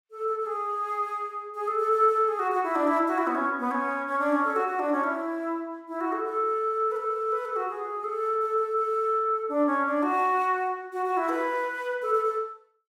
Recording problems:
none

